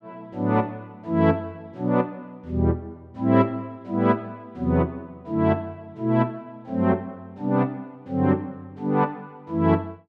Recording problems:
none

